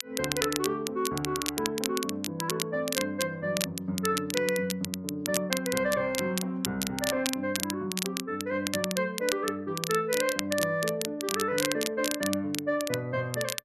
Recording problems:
crackle; vinyl, SNR 4 dB

